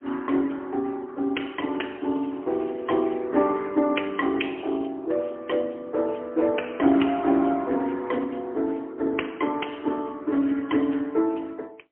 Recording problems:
phone line; 240 Hz to 3.2 kHz, AMR-NB, then MP3
crackling; from 1.5 to 3 s; loose cable, SNR 30 dB

